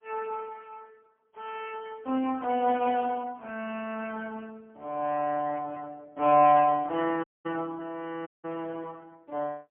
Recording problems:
phone line; 170 Hz to 3.2 kHz, AMR-NB, then MP3
dropout; at 7 s and at 8.5 s

